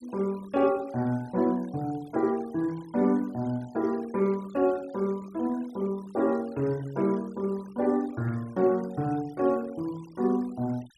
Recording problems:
denoising artefacts; signal-to-artefact ratio 24 dB

